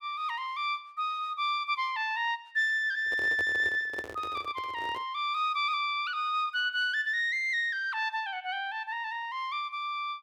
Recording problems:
microphone handling noise; from 3 to 5 s; peak -7 dB vs average level

